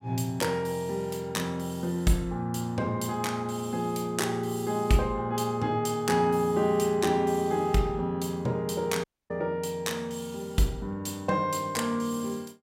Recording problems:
audio cutting out; at 9 s

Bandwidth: 16 kHz